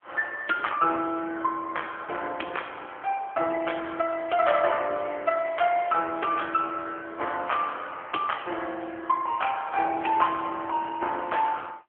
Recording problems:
phone line; 280 Hz to 3.3 kHz, AMR-NB

